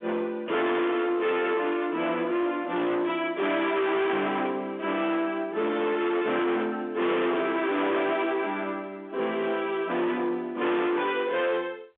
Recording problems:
telephone audio; 220 Hz to 3.5 kHz, G.711
distorted audio; soft clipping, signal-to-distortion ratio 7 dB

